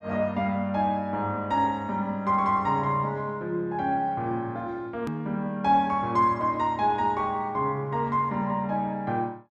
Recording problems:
click at an edit; at 5 s

